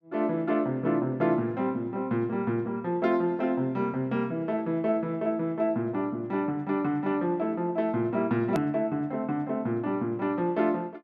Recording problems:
hard cut with a click; at 8.5 s

